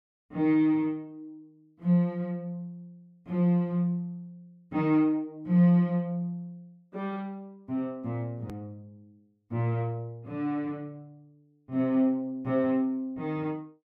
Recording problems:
hard cut with a click; at 8.5 s

